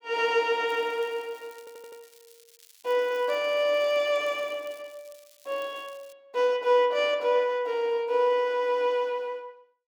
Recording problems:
crackling; from 0.5 to 6 s; loose cable, SNR 28 dB
audio stuttering; at 1.5 s

